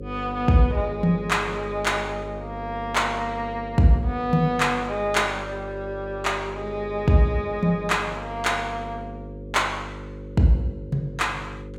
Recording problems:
hum; 50 Hz, harmonics up to 550 Hz, SNR 13 dB

